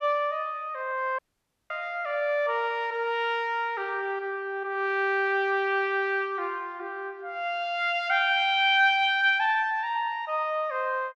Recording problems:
dropout; at 1 s for 0.5 s

